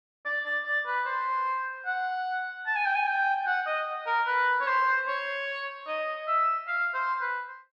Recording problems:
none

